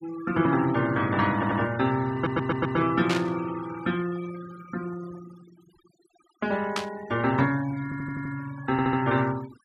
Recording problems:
denoising artefacts; signal-to-artefact ratio 17 dB
audio stuttering; 4 times, first at 1.5 s
burst of static; at 3 s and at 7 s; peak +2 dB vs average level

